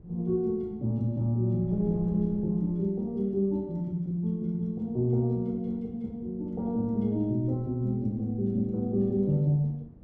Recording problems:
wind on the microphone; below 210 Hz, SNR 20 dB

